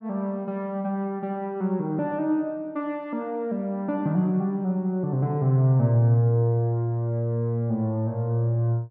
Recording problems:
none

